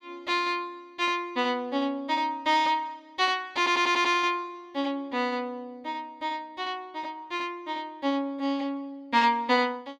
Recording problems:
audio stuttering; at 3.5 s

